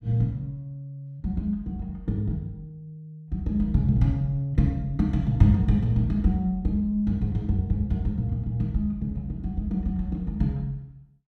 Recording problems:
none

